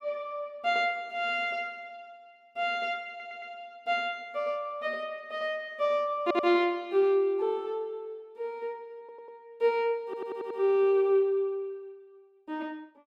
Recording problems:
audio stuttering; 4 times, first at 3 s

